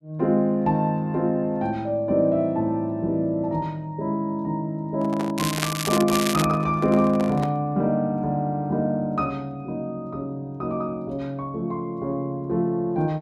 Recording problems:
handling noise; from 5 to 7.5 s; peak -3 dB vs average level
crackling; from 5.5 to 6.5 s; loose cable, SNR 5 dB

